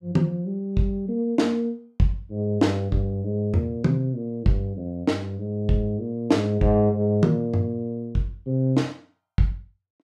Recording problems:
none

